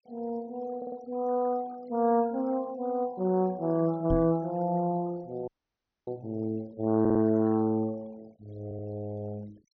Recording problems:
treble missing; nothing above 6.3 kHz
noise reduction artefacts; signal-to-artefact ratio 25 dB
audio stuttering; at 1 s, at 7 s and at 8.5 s
microphone bump; at 4 s; peak +1 dB vs average level
frozen audio; at 5.5 s for 0.5 s

